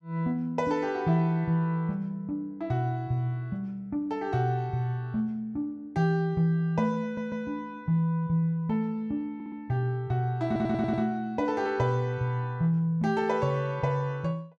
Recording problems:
audio stuttering; at 7 s, at 9.5 s and at 10 s

